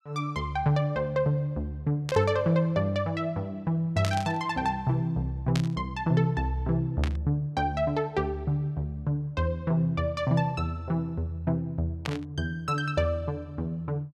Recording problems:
static burst; 5 times, first at 2 s; peak -1 dB vs average level

